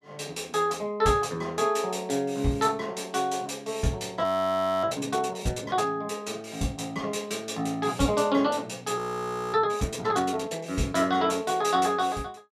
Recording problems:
audio freezing; at 4 s for 0.5 s and at 9 s for 0.5 s

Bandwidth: 14.5 kHz